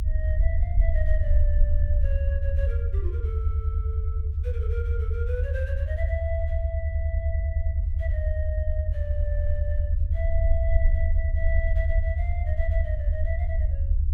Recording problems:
rumble; below 78 Hz, SNR -12 dB

